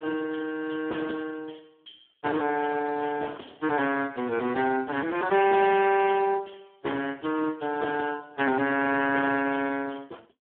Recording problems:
phone line; 220 Hz to 3.2 kHz, Speex

